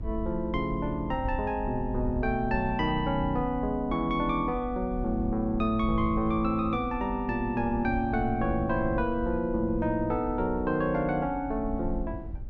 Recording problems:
low-frequency rumble; below 70 Hz, SNR 10 dB

